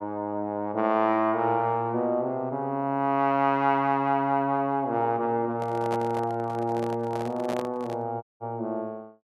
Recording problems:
handling noise; from 5.5 to 8 s; peak -4 dB vs average level
dropout; at 8 s

